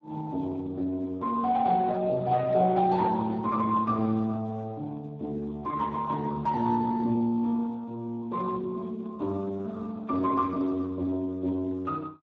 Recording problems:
codec artefacts; Speex, log-spectral distance 2 dB

